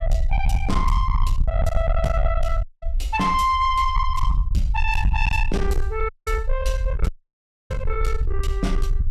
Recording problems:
distorted audio; soft clipping, signal-to-distortion ratio 8 dB
rumble; below 64 Hz, SNR 1 dB
dropout; at 2.5 s, at 6 s and at 7 s for 0.5 s

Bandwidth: 14.5 kHz